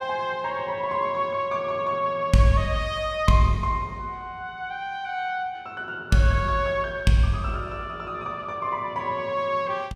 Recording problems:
none

